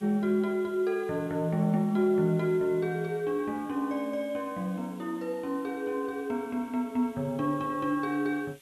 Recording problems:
hiss; SNR 27 dB

